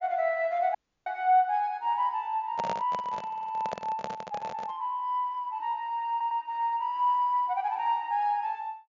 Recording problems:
treble cut off; nothing above 7.1 kHz
audio cutting out; at 1 s
microphone handling noise; from 2.5 to 5 s; peak -1 dB vs average level
audio stuttering; at 3.5 s and at 6 s

